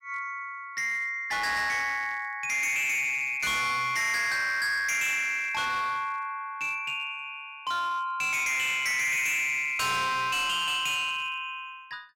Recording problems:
distortion; hard clipping, uneven, signal-to-distortion ratio 8 dB

